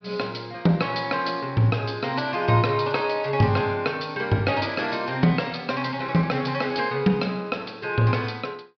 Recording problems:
low-pass filter; nothing above 5.5 kHz

